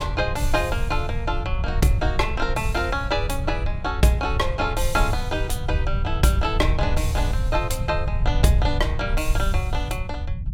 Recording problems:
low-frequency rumble; below 86 Hz, SNR 2 dB

